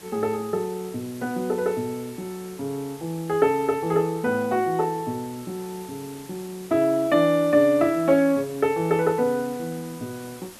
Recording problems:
hiss; slope -2 dB per octave, SNR 20 dB

